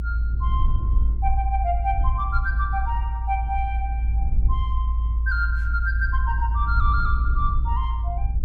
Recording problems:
low-frequency rumble; below 58 Hz, strongest tone 56 Hz, SNR -4 dB

